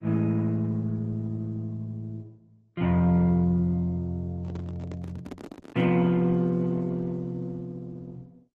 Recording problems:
lossy codec; Opus, then Opus, log-spectral distance 2 dB
microphone handling noise; from 4.5 to 6 s; peak -9 dB vs average level

